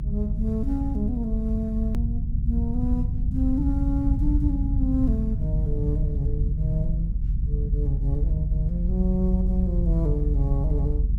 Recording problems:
rumble; below 82 Hz, strongest tone 46 Hz, SNR -3 dB
edit click; at 2 s

